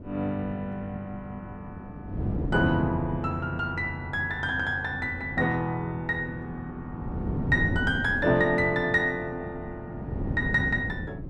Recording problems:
wind on the microphone; below 260 Hz, SNR 8 dB

